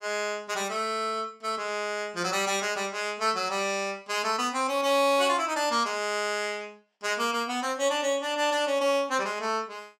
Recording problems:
none

